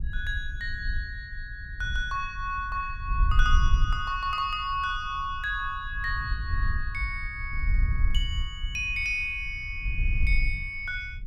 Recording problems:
wind noise; below 62 Hz, SNR 2 dB

